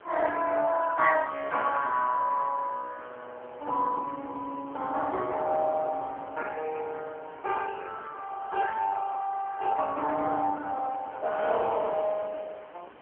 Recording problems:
telephone audio; 300 Hz to 3.1 kHz, AMR-NB
wind noise; below 1.5 kHz, SNR 18 dB

